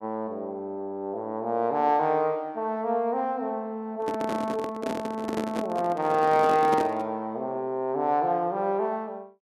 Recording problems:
microphone handling noise; from 4 to 7 s; peak +1 dB vs average level

